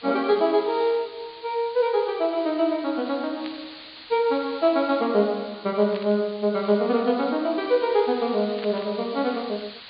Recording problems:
low-pass filter; nothing above 4.7 kHz
background hiss; SNR 18 dB
static burst; at 3.5 s, at 6 s and at 8.5 s; peak -10 dB vs average level

